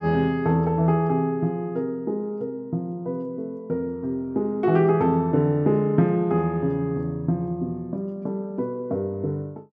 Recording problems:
none

